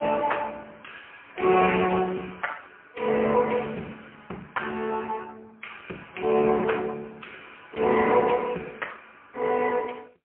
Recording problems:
phone line; 240 Hz to 3.1 kHz, AMR-NB, then MP3

